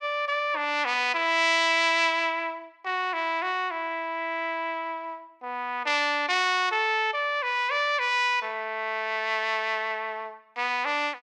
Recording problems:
none

